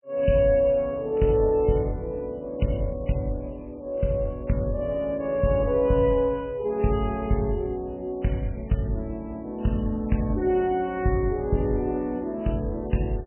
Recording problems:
lossy compression; MP3, log-spectral distance 2 dB, nothing above 2.7 kHz

